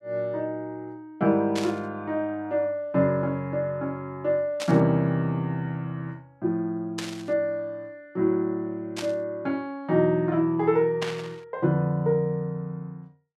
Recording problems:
static burst; 5 times, first at 1.5 s; peak -1 dB vs average level

